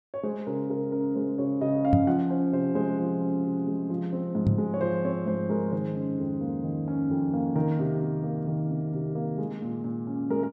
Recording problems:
knock on the microphone; at 2 s and at 4.5 s; peak +8 dB vs average level

